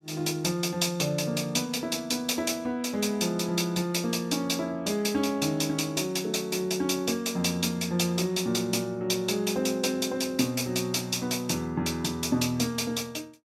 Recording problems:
none

